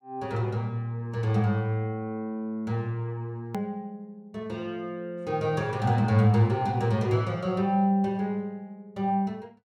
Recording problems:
edit click; at 3.5 s

